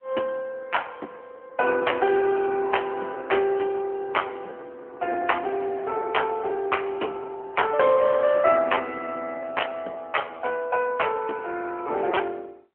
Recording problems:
telephone audio; 280 Hz to 3.2 kHz, AMR-NB
lost packets; 13% of the sound replaced, filled with repeated pitch periods

